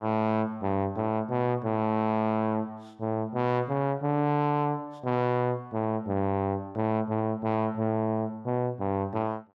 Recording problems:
distorted audio; soft clipping, signal-to-distortion ratio 11 dB

